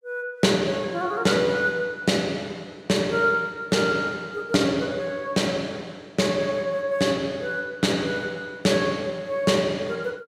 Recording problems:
none

